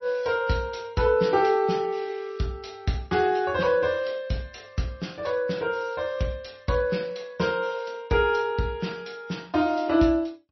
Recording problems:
codec artefacts; MP3, log-spectral distance 3 dB, nothing above 5.8 kHz

